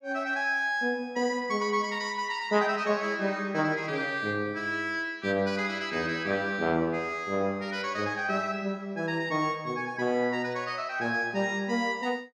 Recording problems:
none

